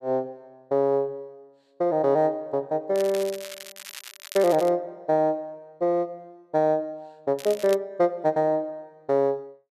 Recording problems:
crackling; from 3 to 4.5 s and at 7.5 s; loose cable, SNR 15 dB

